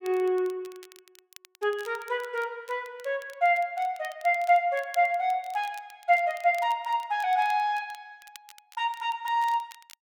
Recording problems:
crackle; vinyl, SNR 24 dB

